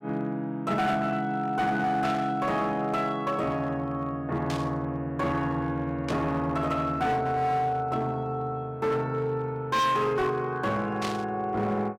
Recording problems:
distortion; hard clipping, signal-to-distortion ratio 12 dB
static burst; 4 times, first at 2 s; peak -2 dB vs average level

